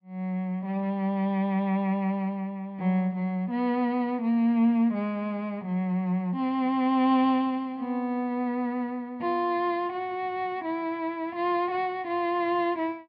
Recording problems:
treble cut off; nothing above 5.5 kHz

